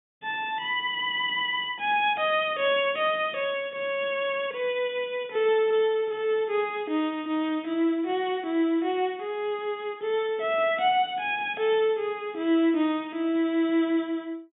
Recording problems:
treble cut off; nothing above 4 kHz

